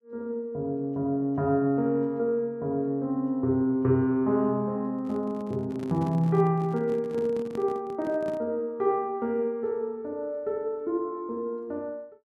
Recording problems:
microphone handling noise; from 5 to 8.5 s; peak -8 dB vs average level

